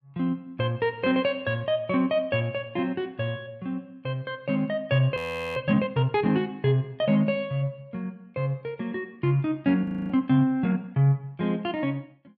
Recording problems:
audio freezing; at 5 s and at 10 s

